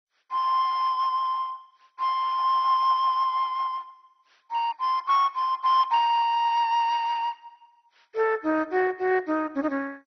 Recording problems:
codec artefacts; MP2, log-spectral distance 3 dB, nothing above 5.3 kHz

